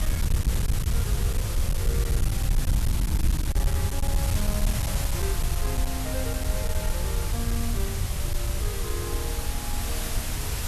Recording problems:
distorted audio; hard clipping, signal-to-distortion ratio 11 dB
hiss; slope -1 dB per octave, SNR -5 dB
wind noise; below 88 Hz, SNR -10 dB

